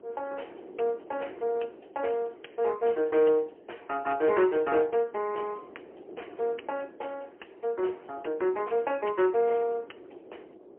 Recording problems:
telephone audio; 300 Hz to 3.1 kHz, AMR-NB, then MP3
wind noise; below 510 Hz, SNR 20 dB

